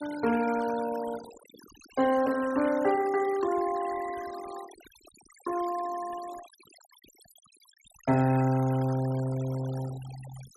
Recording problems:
denoising artefacts; signal-to-artefact ratio 16 dB

